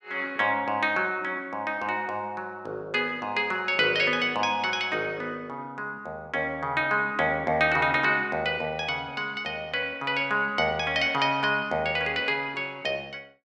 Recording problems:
none

